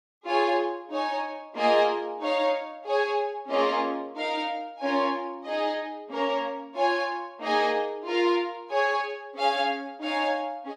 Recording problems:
none

